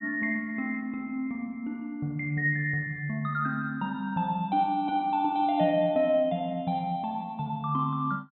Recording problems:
low-pass filter; nothing above 4 kHz

